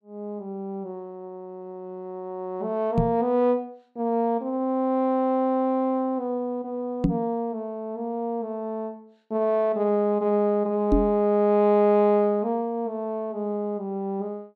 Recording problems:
microphone thump; at 3 s, at 7 s and at 11 s; peak +7 dB vs average level

